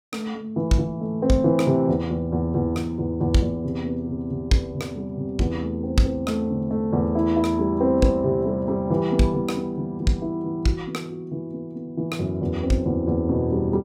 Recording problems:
none

